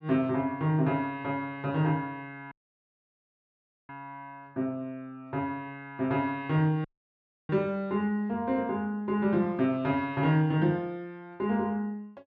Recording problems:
dropout; at 2.5 s for 1.5 s and at 7 s for 0.5 s

